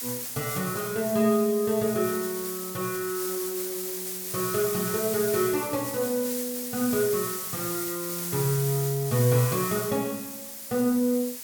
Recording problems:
hiss; slope +1 dB per octave, SNR 4 dB

